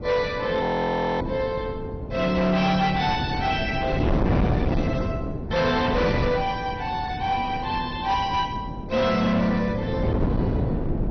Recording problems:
codec artefacts; MP2, log-spectral distance 2 dB, nothing above 6 kHz
distorted audio; hard clipping, signal-to-distortion ratio 8 dB
wind noise; below 340 Hz, SNR 4 dB
frozen audio; at 0.5 s for 0.5 s

